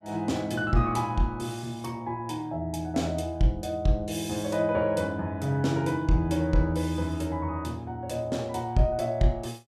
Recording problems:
none

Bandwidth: 15.5 kHz